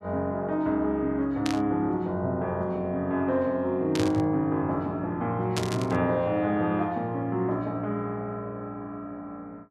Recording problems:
static burst; at 1.5 s, at 4 s and at 5.5 s; peak +1 dB vs average level

